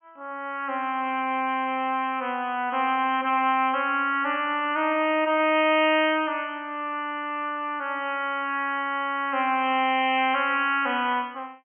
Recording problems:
treble missing; nothing above 3.2 kHz

